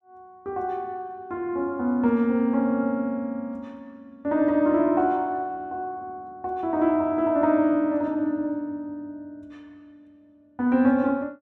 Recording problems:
none

